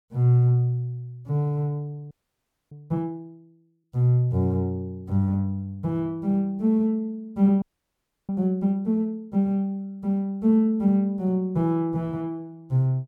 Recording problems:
audio freezing; at 2 s for 0.5 s and at 7.5 s for 0.5 s

